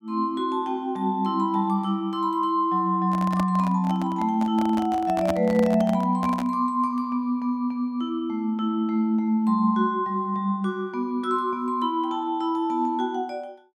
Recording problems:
handling noise; from 3 to 6.5 s; peak 0 dB vs average level

